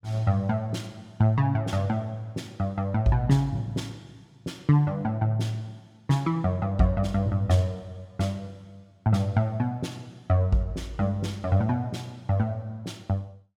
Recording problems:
none

